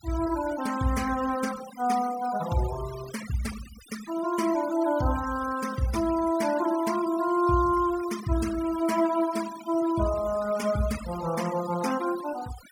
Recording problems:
denoising artefacts; signal-to-artefact ratio 13 dB

